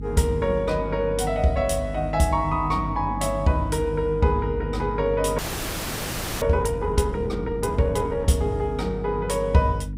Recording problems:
hum; 50 Hz, harmonics up to 300 Hz, SNR 9 dB
audio freezing; at 5.5 s for 1 s

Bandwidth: 15.5 kHz